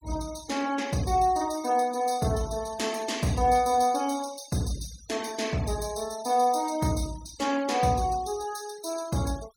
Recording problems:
noise reduction artefacts; signal-to-artefact ratio 17 dB

